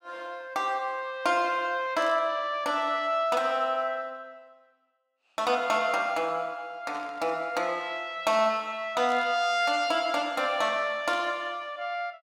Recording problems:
static burst; 4 times, first at 2 s; peak -13 dB vs average level

